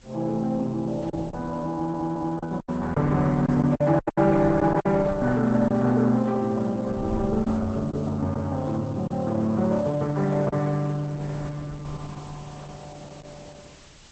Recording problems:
lossy compression; Opus, log-spectral distance 5 dB, nothing above 7.6 kHz
hiss; slope -1 dB per octave, SNR 28 dB
wind on the microphone; below 220 Hz, SNR 17 dB
lost packets; 5% of the sound replaced, filled with silence
stutter; at 1.5 s

